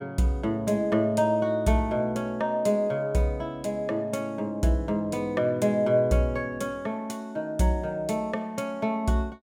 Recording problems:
none

